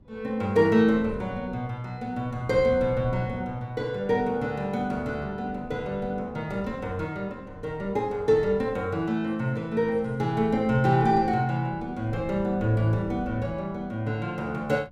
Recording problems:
wind on the microphone; below 210 Hz, SNR 17 dB

